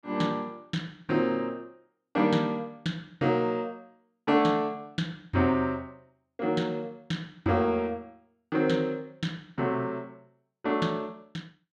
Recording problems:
none

